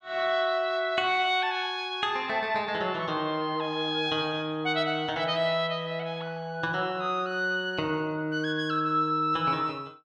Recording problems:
none

